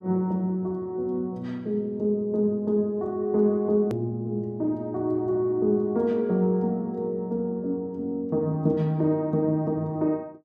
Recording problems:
hard cut with a click; at 4 s

